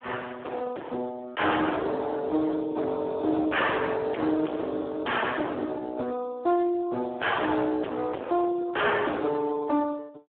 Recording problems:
phone line; 240 Hz to 3.3 kHz, Speex
distorted audio; hard clipping, uneven, signal-to-distortion ratio 4 dB

